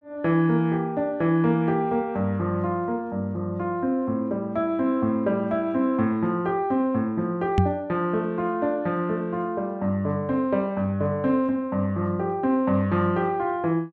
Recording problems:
microphone thump; at 7.5 s; peak +7 dB vs average level

